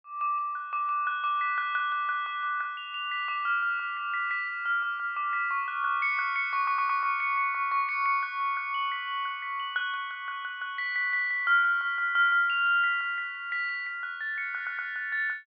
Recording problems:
treble missing; nothing above 5.5 kHz
audio stuttering; at 6.5 s and at 15 s

